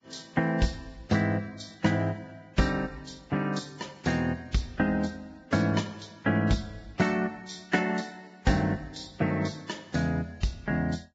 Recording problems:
lossy compression; Vorbis, log-spectral distance 5 dB, nothing above 7.3 kHz

